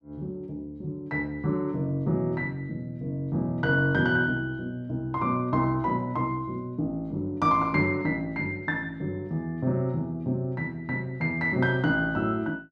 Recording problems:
none

